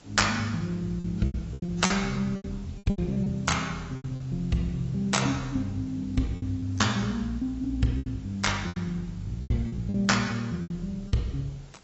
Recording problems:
lossy compression; AAC, log-spectral distance 3 dB, nothing above 7.8 kHz
background hiss; slope -4 dB per octave, SNR 24 dB
packet loss; 10% of the sound replaced, filled with repeated pitch periods

